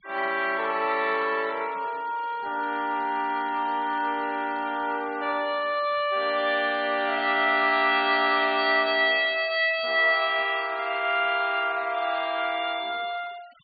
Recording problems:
treble cut off; nothing above 4.6 kHz
noise reduction artefacts; signal-to-artefact ratio 24 dB

